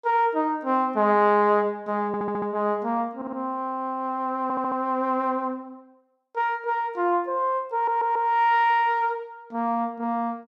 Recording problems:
stutter; 4 times, first at 2 s

